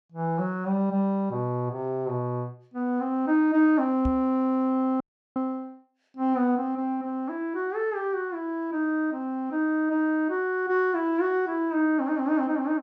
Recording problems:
microphone thump; at 4 s; peak 0 dB vs average level
dropout; at 5 s

